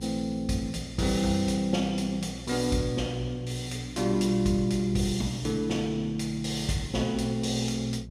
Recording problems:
electrical hum; 60 Hz, harmonics up to 420 Hz, SNR 15 dB

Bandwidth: 14.5 kHz